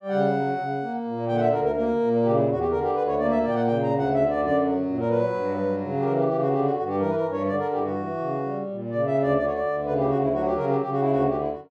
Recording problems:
none

